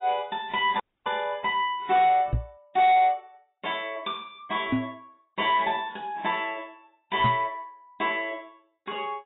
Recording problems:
codec artefacts; AAC, log-spectral distance 3 dB, nothing above 3.6 kHz
distortion; soft clipping, signal-to-distortion ratio 10 dB
audio cutting out; at 1 s
microphone bump; at 2.5 s, at 4.5 s and at 7 s; peak +4 dB vs average level

